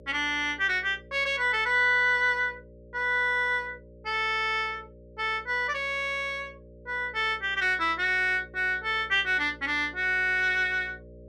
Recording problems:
hum; 60 Hz, harmonics up to 600 Hz, SNR 24 dB

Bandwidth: 13.5 kHz